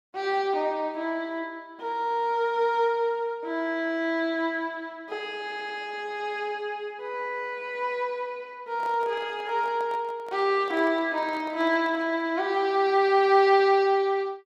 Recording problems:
audio stuttering; at 5.5 s
microphone handling noise; from 8.5 to 12 s; peak -12 dB vs average level

